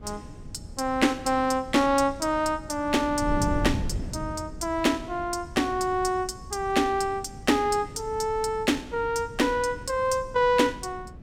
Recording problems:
wind on the microphone; below 180 Hz, SNR 13 dB

